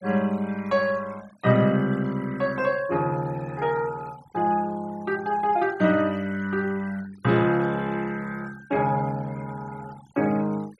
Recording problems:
noise reduction artefacts; signal-to-artefact ratio 23 dB

